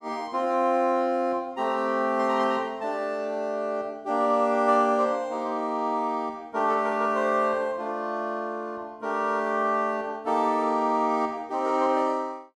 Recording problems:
none

